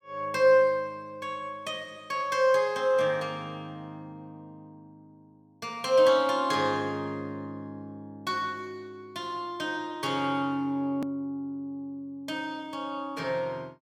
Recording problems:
click at an edit; at 11 s

